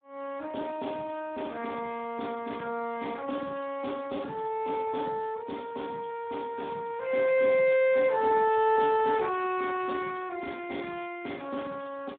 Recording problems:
telephone audio; 170 Hz to 3.6 kHz, Speex

